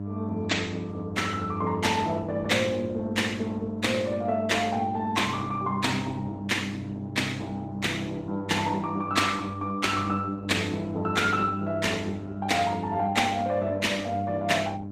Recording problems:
lossy codec; Opus, log-spectral distance 3 dB, nothing above 15.5 kHz
electrical hum; 50 Hz, harmonics up to 700 Hz, SNR 8 dB

